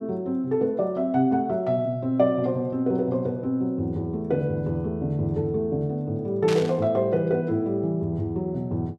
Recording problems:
static burst; at 6.5 s; peak -4 dB vs average level

